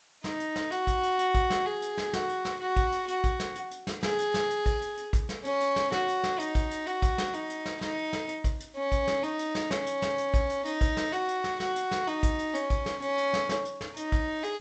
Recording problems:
lossy codec; G.722, log-spectral distance 4 dB, nothing above 8 kHz
hiss; SNR 30 dB

